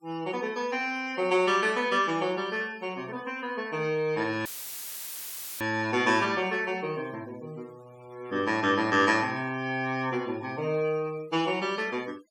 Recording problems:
noise reduction artefacts; signal-to-artefact ratio 24 dB
audio cutting out; at 4.5 s for 1 s; filled with static

